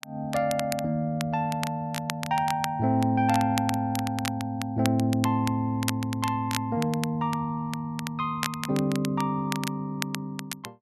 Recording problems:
crackle; vinyl, SNR 10 dB

